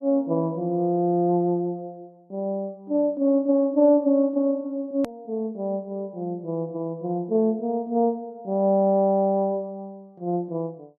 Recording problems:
edit click; at 5 s

